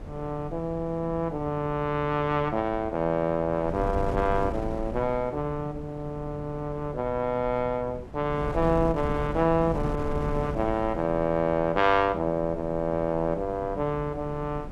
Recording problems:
wind noise; below 260 Hz, SNR 10 dB

